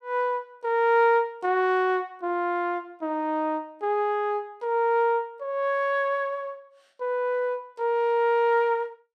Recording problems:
none

